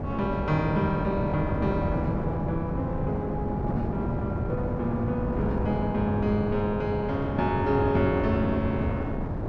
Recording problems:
wind noise; below 400 Hz, SNR 2 dB

